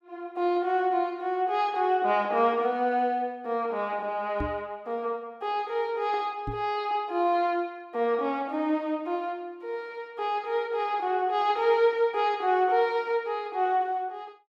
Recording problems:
knock on the microphone; at 4.5 s and at 6.5 s; peak -2 dB vs average level

